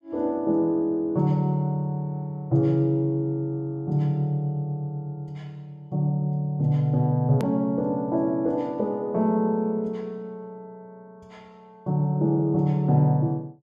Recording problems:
edit click; at 7.5 s

